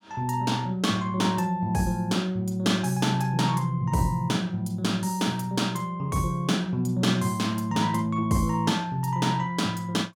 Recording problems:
none

